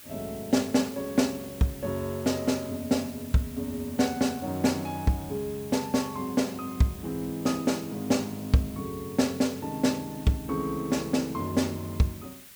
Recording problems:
hiss; SNR 17 dB

